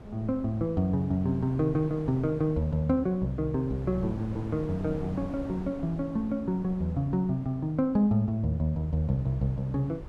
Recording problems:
wind on the microphone; below 380 Hz, SNR 15 dB

